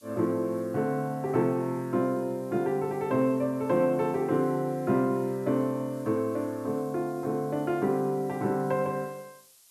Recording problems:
background hiss; SNR 27 dB

